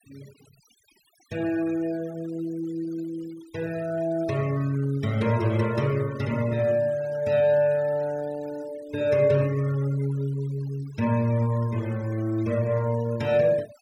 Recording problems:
noise reduction artefacts; signal-to-artefact ratio 21 dB

